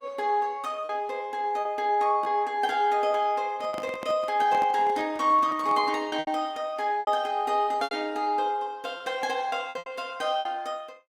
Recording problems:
lossy codec; Opus, log-spectral distance 2 dB, nothing above 19 kHz
lost packets; 7% of the sound replaced, filled with repeated pitch periods
handling noise; from 3.5 to 6 s; peak -7 dB vs average level

